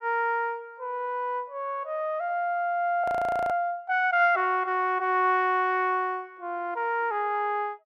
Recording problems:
audio freezing; at 3 s

